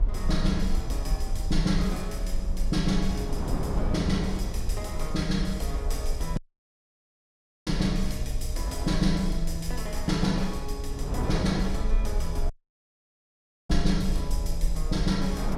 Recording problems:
rumble; below 52 Hz, SNR 3 dB
wind noise; below 430 Hz, SNR 9 dB
audio cutting out; at 6.5 s for 1.5 s and at 13 s for 1 s

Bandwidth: 16 kHz